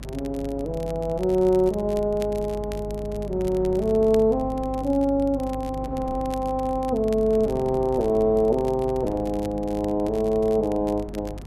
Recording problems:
hum; 50 Hz, harmonics up to 350 Hz, SNR 14 dB
wind noise; below 450 Hz, SNR 18 dB
crackle; vinyl, SNR 24 dB

